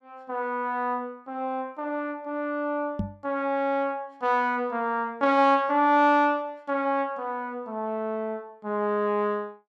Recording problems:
knock on the microphone; at 3 s; peak +1 dB vs average level

